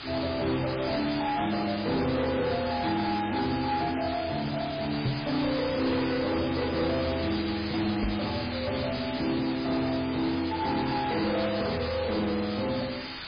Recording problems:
lossy compression; MP3, log-spectral distance 19 dB
distortion; soft clipping, signal-to-distortion ratio 11 dB
background hiss; SNR 8 dB
knock on the microphone; at 5 s and at 8 s; peak +4 dB vs average level

